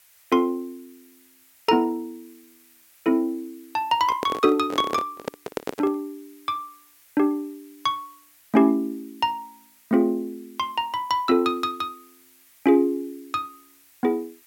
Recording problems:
hiss; SNR 28 dB
microphone handling noise; from 4 to 6 s; peak 0 dB vs average level

